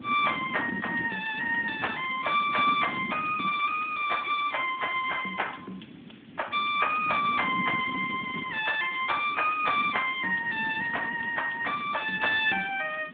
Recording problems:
telephone audio; 220 Hz to 3.7 kHz, Speex
hiss; SNR 28 dB
wind noise; below 320 Hz, SNR 15 dB

